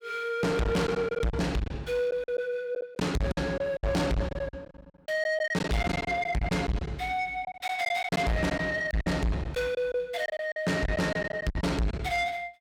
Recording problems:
distorted audio; soft clipping, signal-to-distortion ratio 6 dB
packet loss; 11% of the sound replaced, filled with silence

